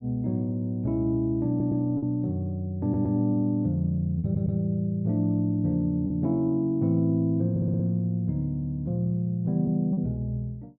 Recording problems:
lost packets; 1.9% of the sound replaced, filled with repeated pitch periods
stutter; 4 times, first at 1.5 s

